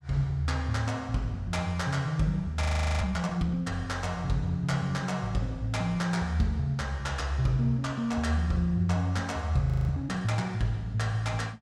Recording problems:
frozen audio; at 2.5 s and at 9.5 s

